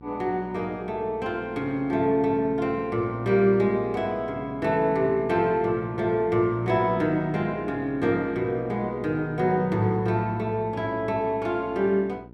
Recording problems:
electrical hum; 60 Hz, harmonics up to 960 Hz, SNR 20 dB

